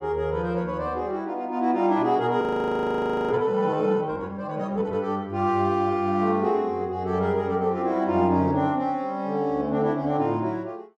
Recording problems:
frozen audio; at 2.5 s for 1 s

